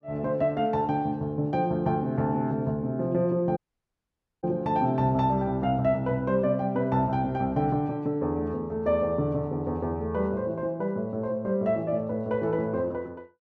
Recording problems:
audio cutting out; at 3.5 s for 1 s

